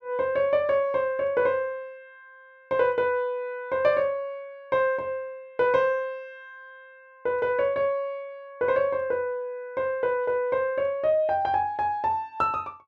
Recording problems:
none

